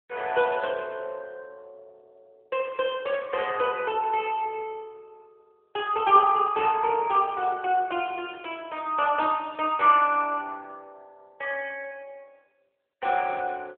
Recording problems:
phone line; 320 Hz to 3.4 kHz, AMR-NB

